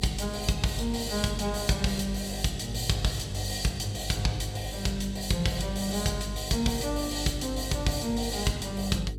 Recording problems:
hum; 50 Hz, harmonics up to 450 Hz, SNR 10 dB

